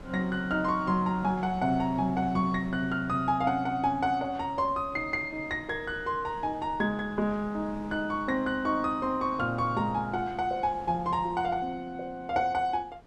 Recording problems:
wind noise; below 580 Hz, SNR 19 dB

